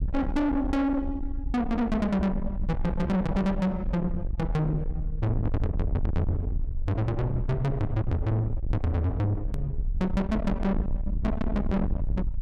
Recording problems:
distortion; soft clipping, signal-to-distortion ratio 6 dB
rumble; below 150 Hz, SNR 4 dB
click at an edit; at 9.5 s

